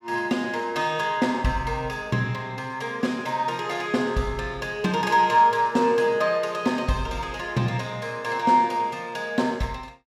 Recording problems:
none

